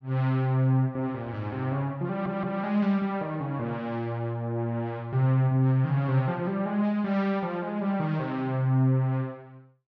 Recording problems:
audio stuttering; at 2 s

